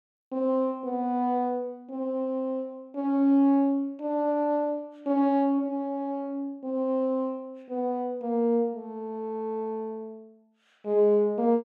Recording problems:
none

